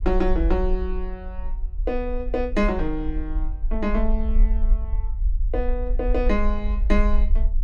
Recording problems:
low-frequency rumble; below 46 Hz, SNR 0 dB

